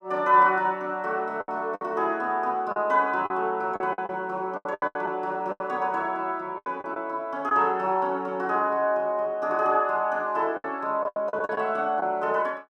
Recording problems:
lost packets; 9% of the sound replaced, filled with the last packet

